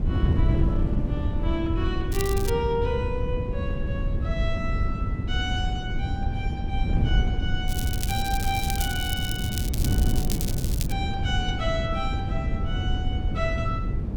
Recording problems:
rumble; below 88 Hz, SNR 5 dB
wind noise; below 140 Hz, SNR -4 dB
crackle; at 2 s and from 7.5 to 11 s; loose cable, SNR 3 dB

